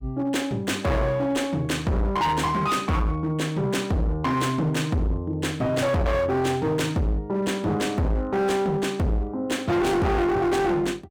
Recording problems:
distorted audio; hard clipping, signal-to-distortion ratio 6 dB

